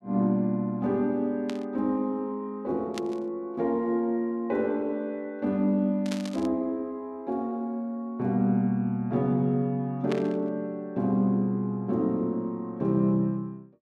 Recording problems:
burst of static; 4 times, first at 1.5 s; peak -5 dB vs average level

